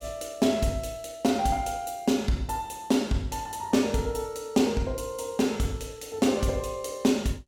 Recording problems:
none

